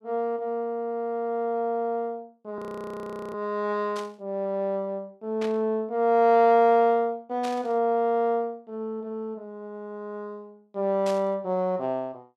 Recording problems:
audio freezing; at 2.5 s for 1 s
static burst; 4 times, first at 4 s; peak -9 dB vs average level

